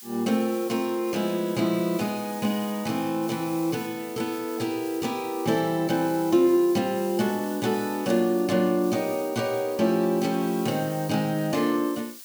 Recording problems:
hiss; slope +4 dB per octave, SNR 16 dB

